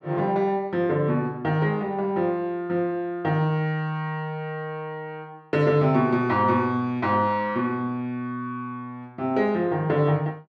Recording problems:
none

